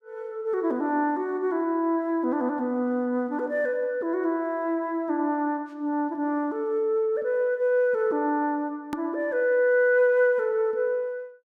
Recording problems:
click at an edit; at 9 s

